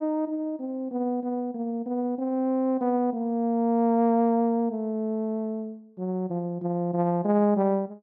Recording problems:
none

